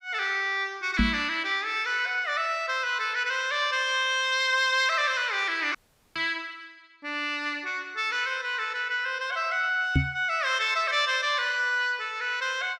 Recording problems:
microphone thump; at 1 s, at 6 s and at 10 s; peak +6 dB vs average level
dropout; at 6 s

